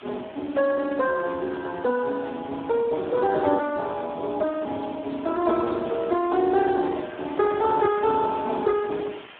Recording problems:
telephone audio; 260 Hz to 2.3 kHz, Speex
background hiss; SNR 20 dB

